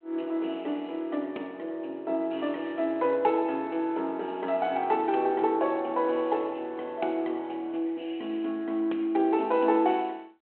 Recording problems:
phone line; 240 Hz to 3.7 kHz, G.726

